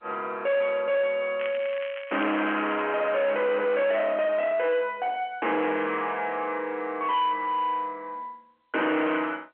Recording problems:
telephone audio; 260 Hz to 3.1 kHz, G.711
distortion; soft clipping, signal-to-distortion ratio 7 dB
crackle; from 1.5 to 3 s; loose cable, SNR 15 dB

